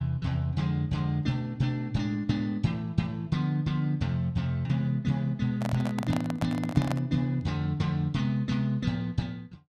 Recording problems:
microphone handling noise; from 5.5 to 7 s; peak 0 dB vs average level

